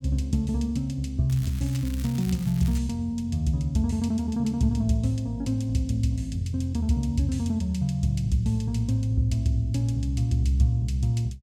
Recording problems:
crackling; from 1.5 to 3 s; loose cable, SNR 19 dB

